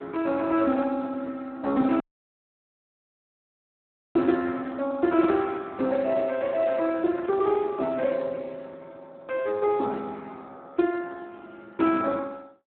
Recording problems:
phone line; 170 Hz to 3.9 kHz, Speex
dropout; at 2 s for 2 s
burst of static; at 4.5 s and at 7 s; peak -20 dB vs average level

